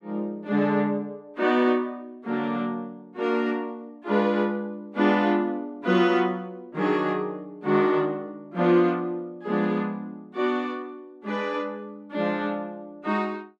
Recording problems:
none

